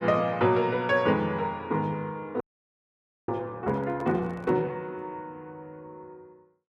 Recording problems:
audio freezing; at 2.5 s for 1 s
microphone handling noise; at 3.5 s; peak -13 dB vs average level

